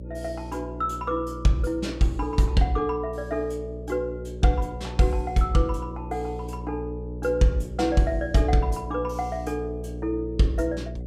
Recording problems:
hum; 60 Hz, harmonics up to 600 Hz, SNR 10 dB

